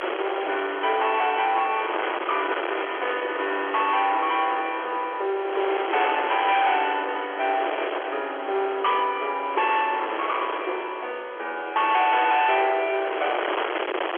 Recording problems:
phone line; 300 Hz to 3.5 kHz, G.711
distortion; soft clipping, signal-to-distortion ratio 8 dB
wind noise; below 1.9 kHz, SNR 7 dB

